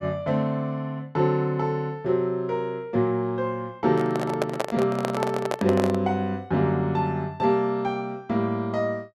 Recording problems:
handling noise; from 4 to 6 s; peak +3 dB vs average level

